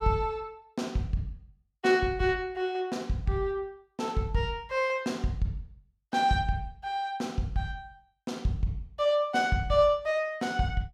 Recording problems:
none

